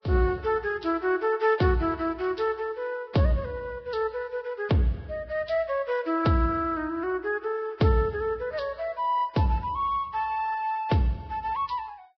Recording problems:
codec artefacts; Vorbis, log-spectral distance 2 dB, nothing above 5 kHz

